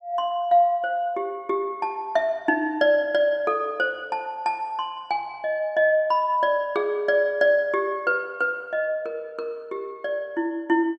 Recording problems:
none

